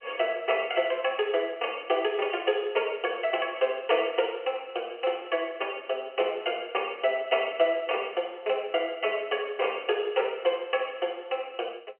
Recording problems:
phone line; 340 Hz to 3.2 kHz, G.711

